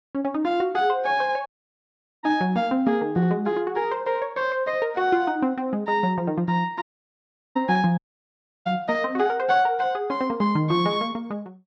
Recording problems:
audio cutting out; at 1.5 s for 1 s, at 7 s for 0.5 s and at 8 s for 0.5 s

